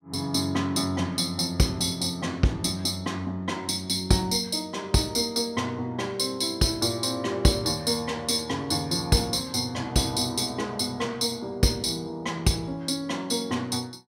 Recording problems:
none

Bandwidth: 16 kHz